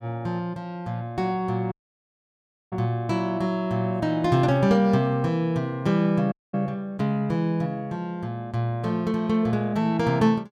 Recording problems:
audio cutting out; at 1.5 s for 1 s and at 6.5 s

